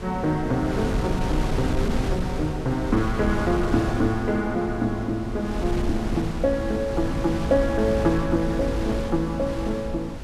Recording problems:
wind noise; below 210 Hz, SNR 5 dB

